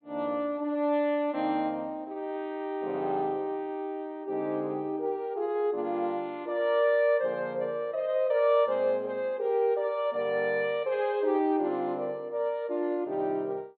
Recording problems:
treble cut off; nothing above 4.3 kHz

